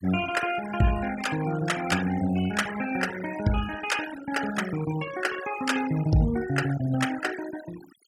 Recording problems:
noise reduction artefacts; signal-to-artefact ratio 11 dB

